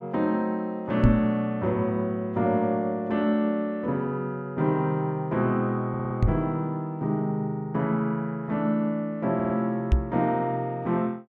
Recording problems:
microphone thump; at 1 s, at 6 s and at 10 s; peak +9 dB vs average level
stutter; at 6 s and at 9.5 s

